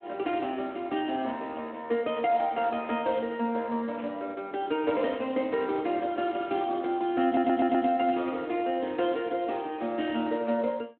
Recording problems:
phone line; 240 Hz to 3.5 kHz, Speex
burst of static; at 4 s and at 8 s; peak -15 dB vs average level
stutter; at 7.5 s

